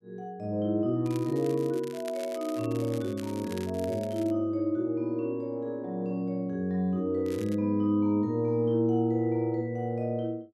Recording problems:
crackle; from 1 to 4.5 s and at 7.5 s; loose cable, SNR 19 dB

